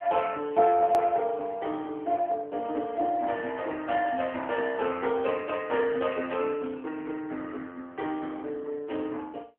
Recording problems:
phone line; 280 Hz to 3.5 kHz, AMR-NB
edit click; at 1 s

